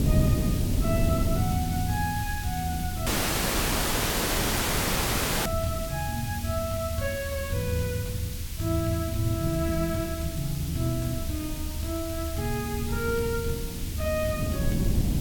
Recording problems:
background hiss; slope +4 dB per octave, SNR 8 dB
low-frequency rumble; below 78 Hz, strongest tone 78 Hz, SNR 6 dB
wind noise; below 220 Hz, SNR 2 dB
crackle; vinyl, SNR 29 dB
audio cutting out; at 3 s for 2.5 s

